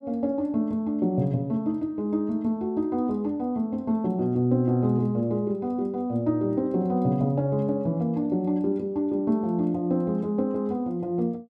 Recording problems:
none

